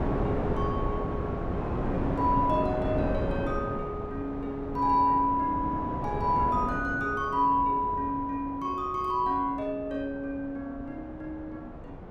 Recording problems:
wind noise; below 550 Hz, SNR 5 dB

